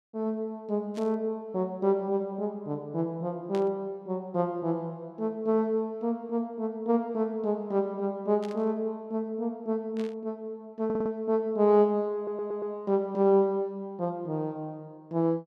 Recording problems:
static burst; 4 times, first at 1 s; peak -11 dB vs average level
stutter; at 11 s and at 12 s

